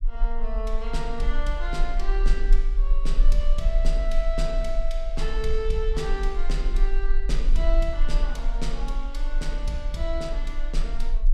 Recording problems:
rumble; below 34 Hz, strongest tone 20 Hz, SNR -4 dB

